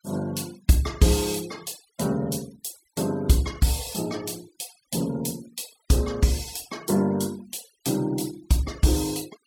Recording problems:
denoising artefacts; signal-to-artefact ratio 20 dB

